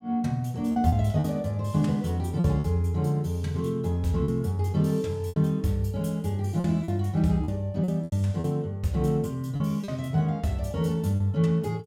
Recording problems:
packet loss; 6% of the sound replaced, filled with repeated pitch periods

